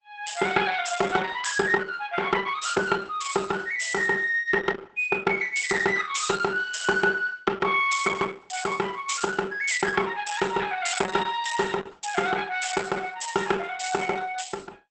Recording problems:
lossy codec; Opus, log-spectral distance 6 dB, nothing above 8.2 kHz

